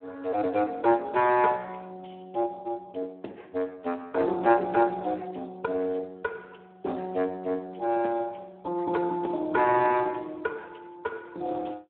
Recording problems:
telephone audio; 300 Hz to 2.9 kHz, Speex

